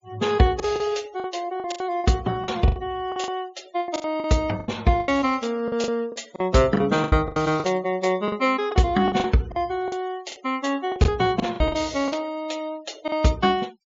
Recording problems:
treble cut off; nothing above 7.3 kHz
denoising artefacts; signal-to-artefact ratio 24 dB
packet loss; 13% of the sound replaced, filled with the last packet

